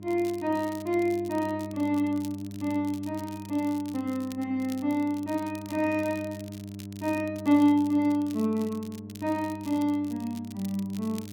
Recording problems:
hum; 50 Hz, harmonics up to 700 Hz, SNR 13 dB
crackling; vinyl, SNR 21 dB

